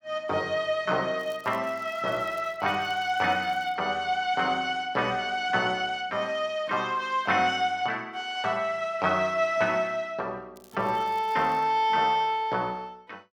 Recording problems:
crackling; from 1 to 4 s and from 11 to 12 s; loose cable, SNR 29 dB

